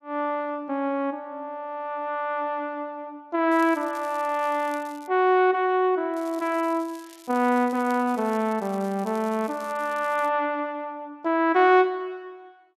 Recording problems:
crackle; from 3.5 to 5 s and from 6 to 10 s; loose cable, SNR 24 dB

